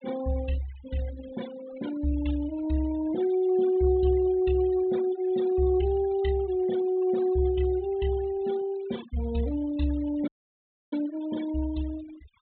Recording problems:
low-pass filter; nothing above 4 kHz
denoising artefacts; signal-to-artefact ratio 18 dB
dropout; at 10 s for 0.5 s

